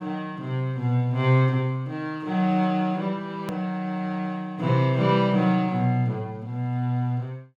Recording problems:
edit click; at 3.5 s

